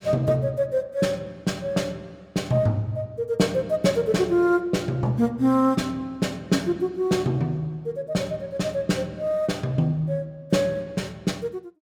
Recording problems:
none

